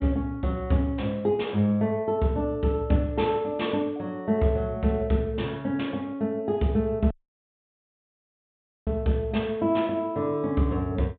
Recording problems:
low-pass filter; nothing above 4 kHz
audio cutting out; at 7 s for 2 s

